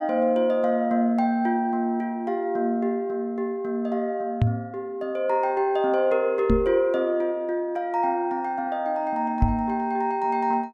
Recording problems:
knock on the microphone; at 4.5 s, at 6.5 s and at 9.5 s; peak +7 dB vs average level

